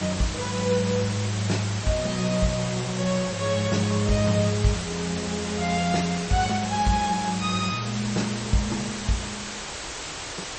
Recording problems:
lossy compression; MP3, log-spectral distance 15 dB, nothing above 8.2 kHz
background hiss; slope -2 dB per octave, SNR 7 dB

